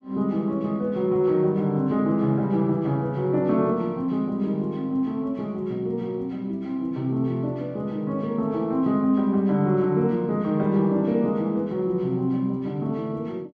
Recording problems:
none

